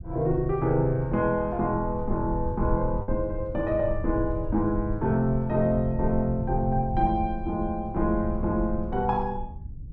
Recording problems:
low-frequency rumble; below 80 Hz, SNR 9 dB
lost packets; 0.6% of the sound replaced, filled with the last packet

